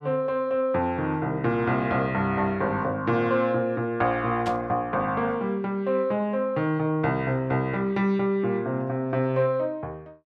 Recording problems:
burst of static; at 4.5 s; peak -7 dB vs average level

